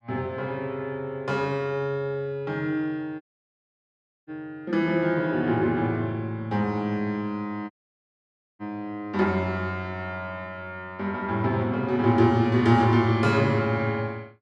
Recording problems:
audio cutting out; at 3 s for 1 s and at 7.5 s for 1 s

